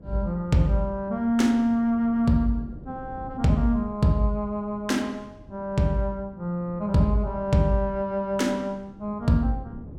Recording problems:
wind on the microphone; below 240 Hz, SNR 20 dB

